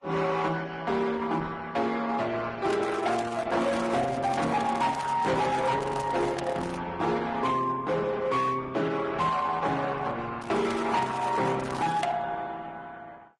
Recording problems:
codec artefacts; Opus, then Vorbis, log-spectral distance 4 dB, nothing above 10.4 kHz
distorted audio; hard clipping, signal-to-distortion ratio 11 dB
crackling; from 2.5 to 7 s and from 10 to 12 s; loose cable, SNR 18 dB

